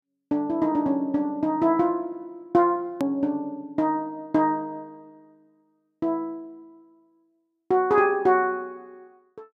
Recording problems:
click at an edit; at 3 s

